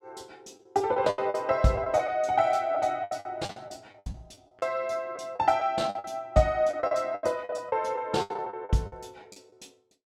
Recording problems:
packet loss; 15% of the sound replaced, filled with the last packet

